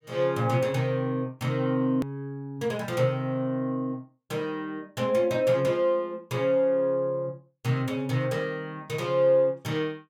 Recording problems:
hard cut with a click; at 2 s

